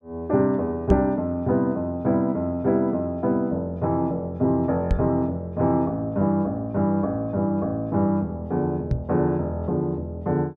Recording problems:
knock on the microphone; at 1 s, at 5 s and at 9 s; peak +7 dB vs average level

